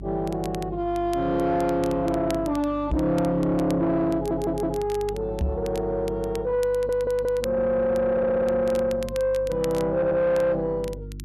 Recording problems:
distortion; soft clipping, signal-to-distortion ratio 12 dB
hum; 50 Hz, harmonics up to 350 Hz, SNR 15 dB
crackle; vinyl, SNR 21 dB
microphone bump; at 3 s and at 5.5 s; peak +2 dB vs average level
stutter; 4 times, first at 4 s

